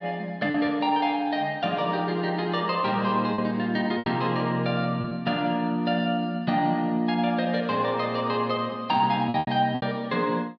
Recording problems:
packet loss; 4% of the sound replaced, filled with repeated pitch periods

